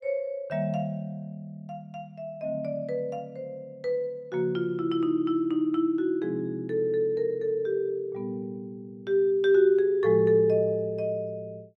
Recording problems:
none

